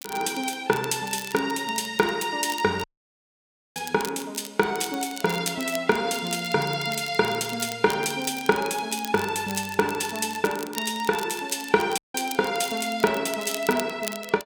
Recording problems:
crackle; vinyl, SNR 13 dB
audio cutting out; at 3 s for 1 s and at 12 s

